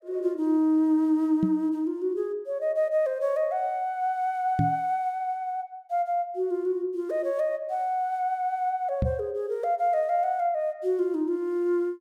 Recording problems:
microphone bump; at 1.5 s, at 4.5 s and at 9 s; peak +4 dB vs average level

